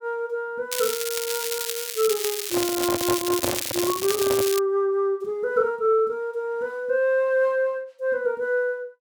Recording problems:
crackling; from 0.5 to 4.5 s; loose cable, SNR 3 dB
microphone handling noise; from 2.5 to 4.5 s; peak +2 dB vs average level

